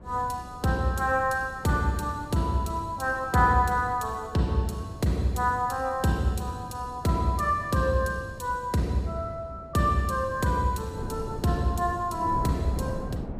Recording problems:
wind on the microphone; below 330 Hz, SNR 14 dB

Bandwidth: 15 kHz